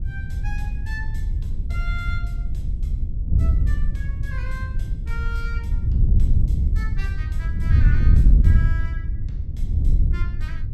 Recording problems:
wind noise; below 84 Hz, SNR -15 dB

